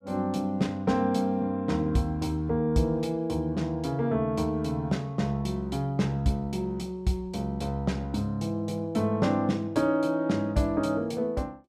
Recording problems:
none

